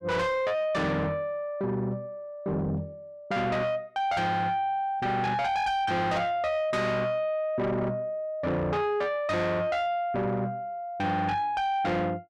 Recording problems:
distortion; soft clipping, signal-to-distortion ratio 8 dB

